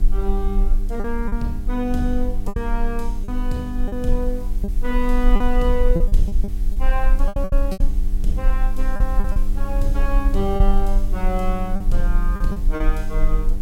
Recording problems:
electrical hum; 50 Hz, harmonics up to 800 Hz, SNR 8 dB
background hiss; slope +2 dB per octave, SNR 22 dB
low-frequency rumble; below 36 Hz, strongest tone 20 Hz, SNR -3 dB
packet loss; 8% of the sound replaced, filled with repeated pitch periods

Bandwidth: 16 kHz